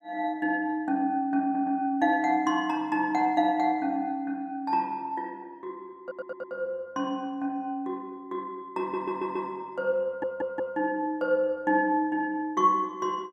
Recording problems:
audio stuttering; 4 times, first at 1.5 s

